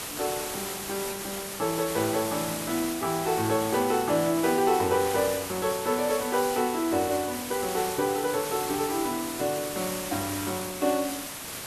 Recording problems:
hiss; slope -2 dB per octave, SNR 6 dB

